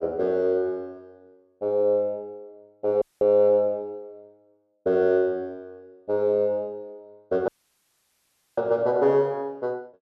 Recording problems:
dropout; at 3 s and at 7.5 s for 1 s

